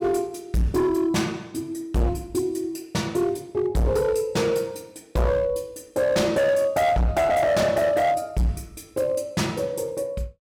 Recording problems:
distorted audio; hard clipping, signal-to-distortion ratio 8 dB

